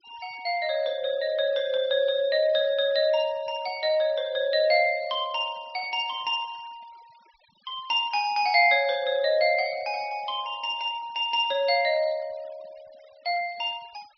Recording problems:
low-pass filter; nothing above 5.5 kHz
noise reduction artefacts; signal-to-artefact ratio 27 dB

